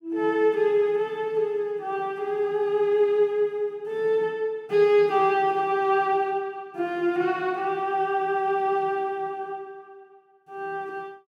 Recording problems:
none

